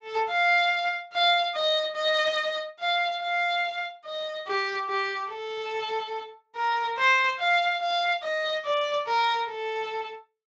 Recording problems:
codec artefacts; Speex, log-spectral distance 3 dB, nothing above 7.3 kHz

